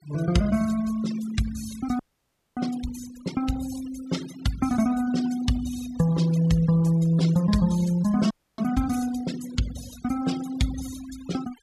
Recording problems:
denoising artefacts; signal-to-artefact ratio 16 dB
frozen audio; at 2 s for 0.5 s and at 8.5 s

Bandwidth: 14.5 kHz